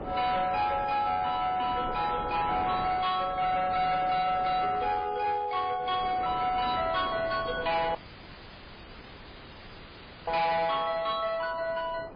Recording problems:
codec artefacts; MP3, log-spectral distance 6 dB, nothing above 4.4 kHz
distortion; hard clipping, uneven, signal-to-distortion ratio 10 dB
wind noise; below 830 Hz, SNR 13 dB
dropout; at 8 s for 2.5 s

